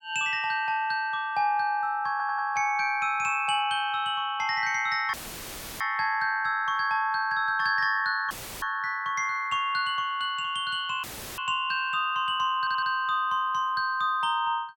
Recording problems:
audio stuttering; at 2 s and at 13 s
dropout; at 5 s for 0.5 s, at 8.5 s and at 11 s; filled with static

